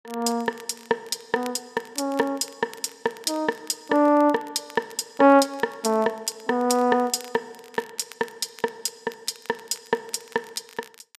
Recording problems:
crackle; vinyl, SNR 24 dB

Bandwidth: 14.5 kHz